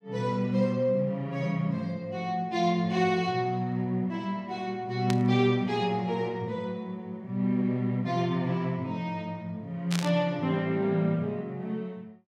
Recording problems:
static burst; at 5 s and at 10 s; peak -1 dB vs average level

